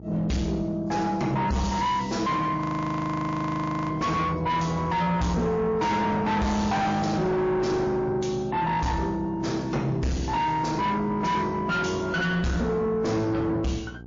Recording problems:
codec artefacts; MP3, log-spectral distance 2 dB, nothing above 6.5 kHz
distorted audio; soft clipping, signal-to-distortion ratio 7 dB
hum; 60 Hz, harmonics up to 900 Hz, SNR 18 dB
frozen audio; at 2.5 s for 1.5 s

